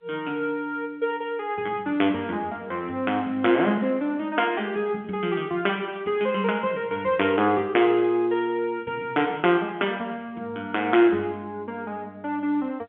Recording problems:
telephone audio; 220 Hz to 3.5 kHz, G.711

